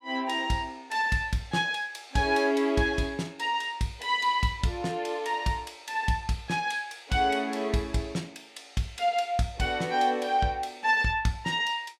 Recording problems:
none

